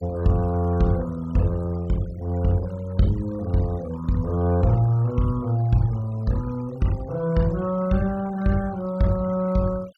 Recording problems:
denoising artefacts; signal-to-artefact ratio 22 dB

